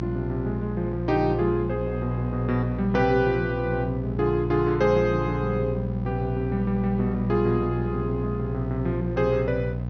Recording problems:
low-pass filter; nothing above 6.4 kHz
electrical hum; 60 Hz, harmonics up to 780 Hz, SNR 4 dB

